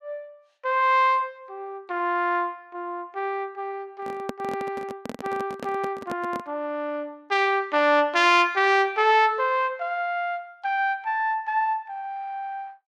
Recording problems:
microphone handling noise; from 4 to 6.5 s; peak -3 dB vs average level

